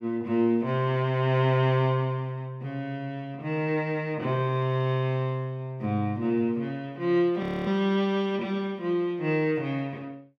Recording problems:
audio freezing; at 7.5 s

